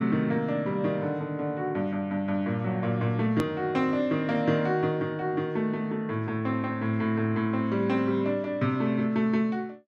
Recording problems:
click at an edit; at 3.5 s

